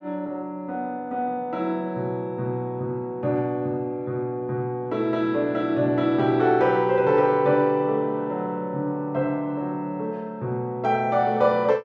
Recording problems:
none

